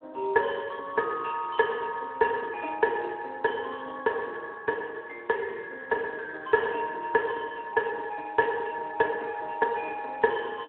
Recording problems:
telephone audio; 280 Hz to 2.8 kHz, Speex

